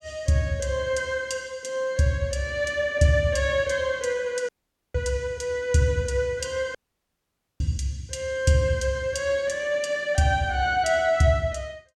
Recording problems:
dropout; at 4.5 s and at 7 s for 1 s

